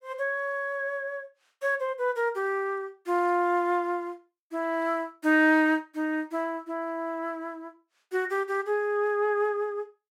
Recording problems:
none

